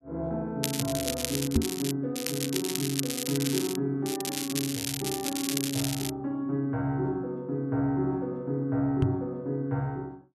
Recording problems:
crackle; from 0.5 to 2 s, from 2 to 4 s and from 4 to 6 s; loose cable, SNR 2 dB
microphone thump; at 1.5 s and at 9 s; peak +9 dB vs average level

